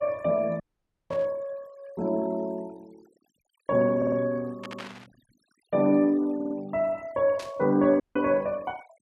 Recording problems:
noise reduction artefacts; signal-to-artefact ratio 28 dB
dropout; at 0.5 s for 0.5 s and at 8 s
burst of static; at 1 s, at 4.5 s and at 7.5 s; peak -9 dB vs average level
audio stuttering; at 4 s, at 4.5 s and at 6.5 s

